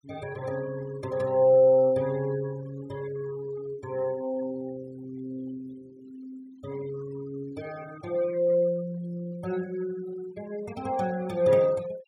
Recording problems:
noise reduction artefacts; signal-to-artefact ratio 22 dB

